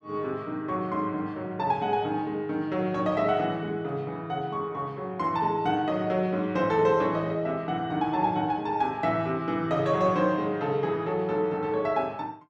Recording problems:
none

